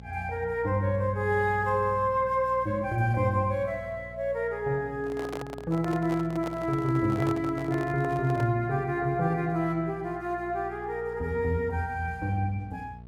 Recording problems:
mains hum; 60 Hz, harmonics up to 720 Hz, SNR 19 dB
handling noise; from 5 to 8.5 s; peak -5 dB vs average level

